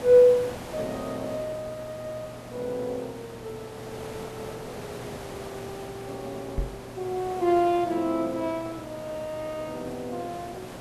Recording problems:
hum; 60 Hz, harmonics up to 960 Hz, SNR 20 dB
background hiss; slope -6 dB per octave, SNR 13 dB
knock on the microphone; at 6.5 s; peak +2 dB vs average level

